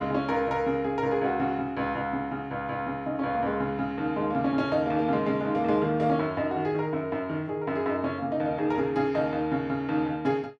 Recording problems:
none

